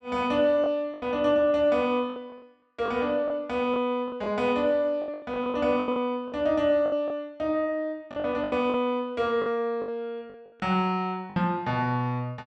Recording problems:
packet loss; 10% of the sound replaced, filled with the last packet

